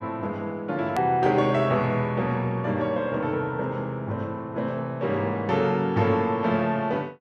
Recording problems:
edit click; at 1 s

